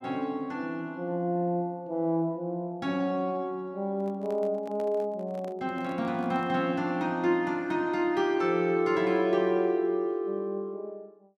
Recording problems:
microphone handling noise; from 4 to 6.5 s; peak -12 dB vs average level

